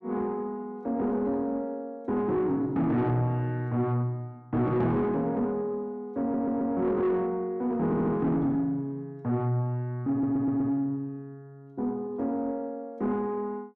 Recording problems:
distortion; soft clipping, signal-to-distortion ratio 10 dB
stutter; at 6 s, at 8 s and at 10 s

